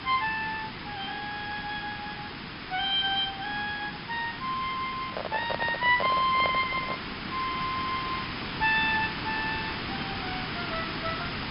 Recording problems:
low-pass filter; nothing above 5.5 kHz
hiss; SNR 6 dB
handling noise; from 5 to 7 s; peak +2 dB vs average level

